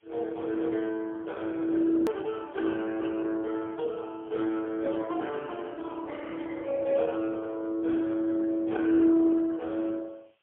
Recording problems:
phone line; 260 Hz to 3.3 kHz, AMR-NB, then MP3
background hiss; SNR 42 dB
edit click; at 2 s

